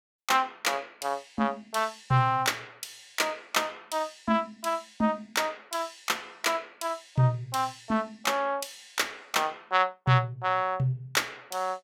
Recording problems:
none

